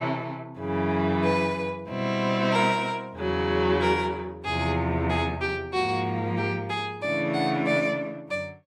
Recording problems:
none

